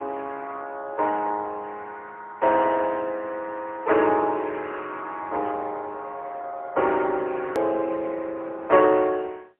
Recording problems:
telephone audio; 340 Hz to 3.4 kHz, AMR-NB, then MP3
edit click; at 7.5 s

